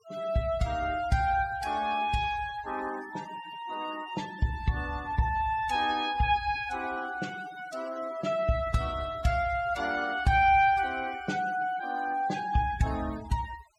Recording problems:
noise reduction artefacts; signal-to-artefact ratio 18 dB

